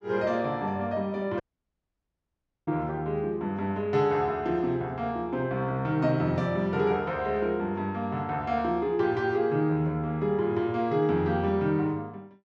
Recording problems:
audio cutting out; at 1.5 s for 1.5 s

